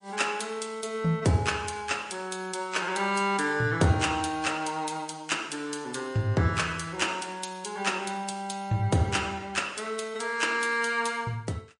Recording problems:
lossy compression; MP3, log-spectral distance 5 dB, nothing above 10.1 kHz

